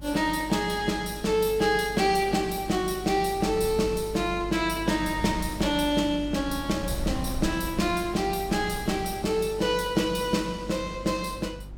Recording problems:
hum; 50 Hz, harmonics up to 400 Hz, SNR 16 dB
wind noise; below 130 Hz, SNR 17 dB

